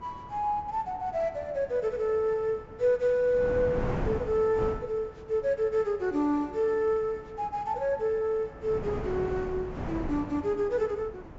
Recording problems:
treble cut off; nothing above 7.6 kHz
wind on the microphone; below 540 Hz, SNR 11 dB

